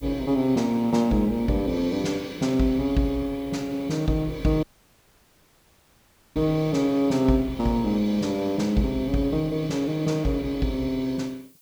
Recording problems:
background hiss; SNR 29 dB
dropout; at 4.5 s for 1.5 s

